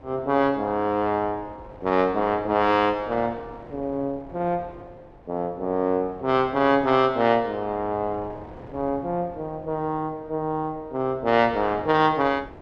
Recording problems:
wind noise; below 700 Hz, SNR 21 dB

